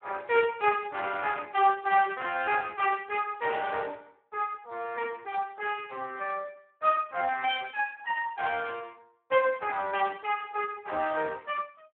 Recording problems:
phone line; 280 Hz to 3.2 kHz, Speex
burst of static; at 7.5 s and at 10 s; peak -16 dB vs average level

